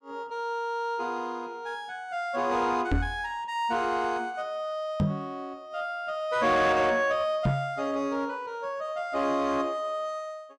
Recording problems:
distorted audio; soft clipping, signal-to-distortion ratio 11 dB
knock on the microphone; at 3 s, at 5 s and at 7.5 s; peak +7 dB vs average level

